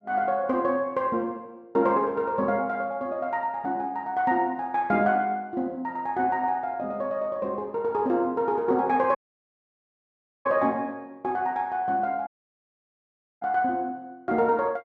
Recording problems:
audio cutting out; at 9 s for 1.5 s and at 12 s for 1 s

